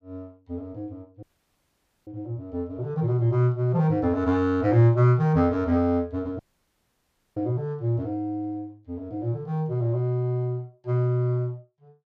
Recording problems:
dropout; at 1 s for 1 s and at 6.5 s for 1 s

